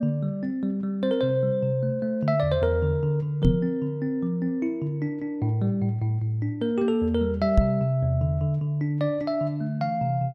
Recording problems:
microphone bump; at 3.5 s and at 7.5 s; peak +8 dB vs average level

